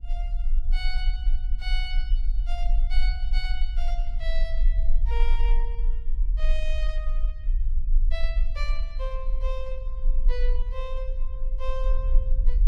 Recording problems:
low-frequency rumble; below 38 Hz, strongest tone 22 Hz, SNR -10 dB

